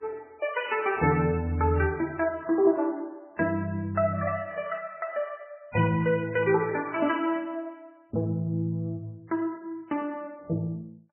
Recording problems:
lossy compression; MP3, log-spectral distance 2 dB, nothing above 2.4 kHz

